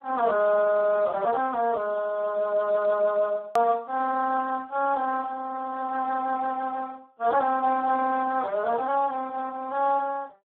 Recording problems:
telephone audio; 300 Hz to 2.1 kHz, Speex
edit click; at 3.5 s

